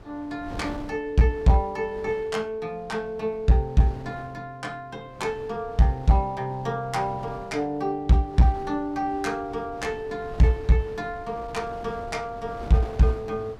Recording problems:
distorted audio; hard clipping, uneven, signal-to-distortion ratio 12 dB
wind noise; below 540 Hz, SNR 17 dB

